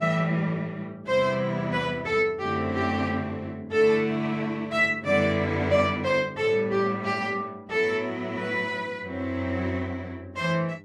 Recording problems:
hum; 50 Hz, harmonics up to 1 kHz, SNR 23 dB

